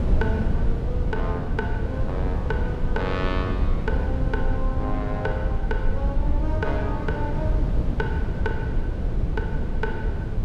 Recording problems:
low-frequency rumble; below 54 Hz, SNR 2 dB
wind noise; below 150 Hz, SNR -4 dB

